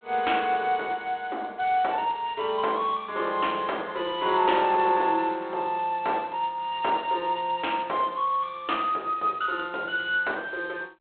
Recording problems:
telephone audio; 320 Hz to 3.5 kHz, G.726

